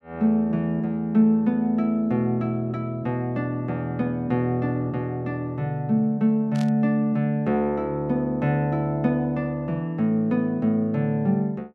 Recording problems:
burst of static; at 6.5 s; peak -12 dB vs average level

